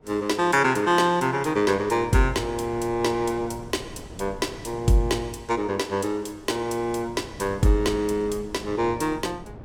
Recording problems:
wind noise; below 380 Hz, SNR 19 dB

